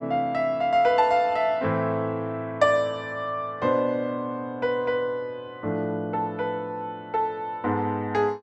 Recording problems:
none

